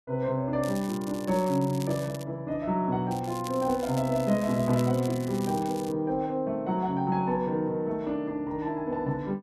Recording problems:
crackle; from 0.5 to 2 s and from 3 to 6 s; loose cable, SNR 17 dB

